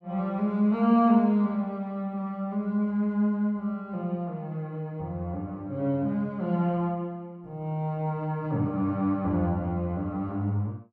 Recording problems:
none

